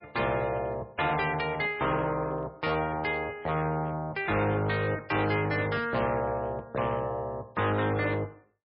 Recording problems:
lossy codec; MP3, log-spectral distance 3 dB, nothing above 5.3 kHz
distorted audio; hard clipping, signal-to-distortion ratio 11 dB

